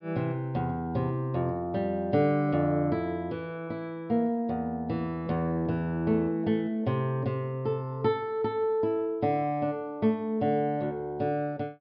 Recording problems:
treble cut off; nothing above 5.5 kHz

